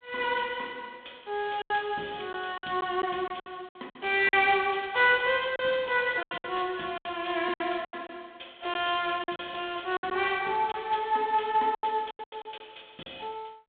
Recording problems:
phone line; 190 Hz to 3.6 kHz, G.726
packet loss; 9% of the sound replaced, filled with silence

